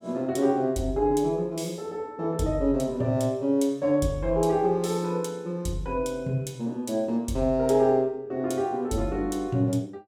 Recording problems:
none

